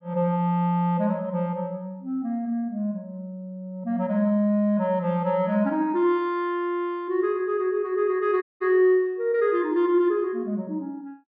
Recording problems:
audio cutting out; at 8.5 s

